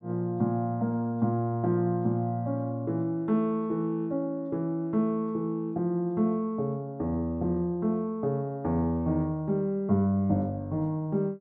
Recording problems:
none

